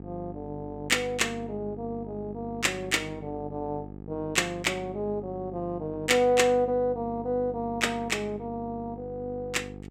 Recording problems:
hum; 50 Hz, harmonics up to 900 Hz, SNR 13 dB

